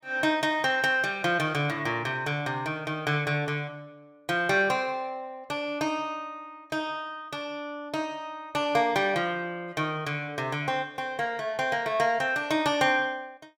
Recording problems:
none

